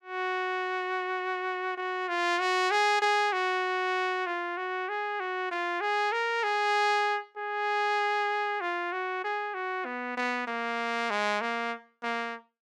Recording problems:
none

